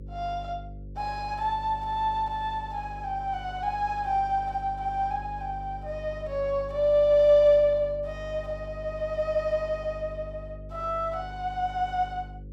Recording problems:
hum; 50 Hz, harmonics up to 550 Hz, SNR 15 dB

